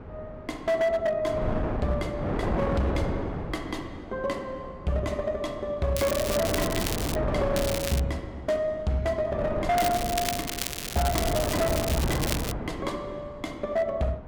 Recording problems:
distortion; hard clipping, signal-to-distortion ratio 12 dB
wind noise; below 570 Hz, SNR 3 dB
crackle; from 6 to 7 s, at 7.5 s and from 10 to 13 s; loose cable, SNR 4 dB

